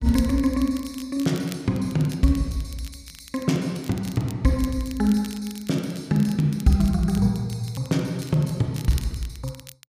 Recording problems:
crackle; vinyl, SNR 20 dB

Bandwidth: 15 kHz